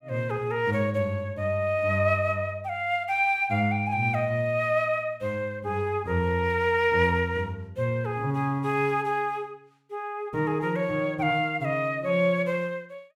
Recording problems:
none

